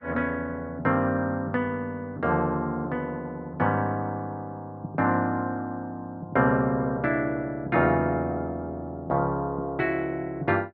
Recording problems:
lossy compression; Vorbis, log-spectral distance 2 dB

